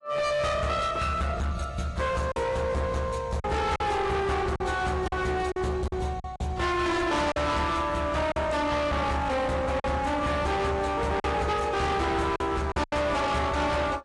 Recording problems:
codec artefacts; AAC, log-spectral distance 3 dB, nothing above 10.7 kHz
distortion; hard clipping, signal-to-distortion ratio 6 dB
lost packets; 5% of the sound replaced, filled with silence

